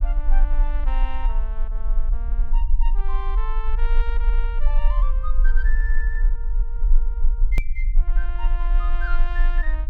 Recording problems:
rumble; below 36 Hz, strongest tone 22 Hz, SNR -12 dB
edit click; at 7.5 s

